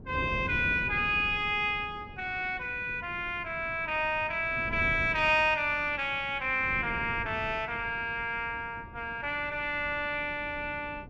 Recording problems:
wind on the microphone; below 290 Hz, SNR 15 dB

